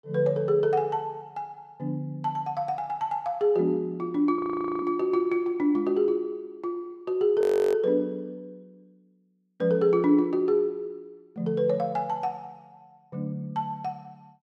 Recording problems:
frozen audio; at 4.5 s and at 7.5 s

